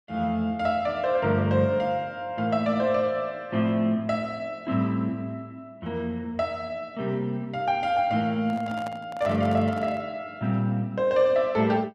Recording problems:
microphone handling noise; from 8.5 to 10 s; peak -9 dB vs average level

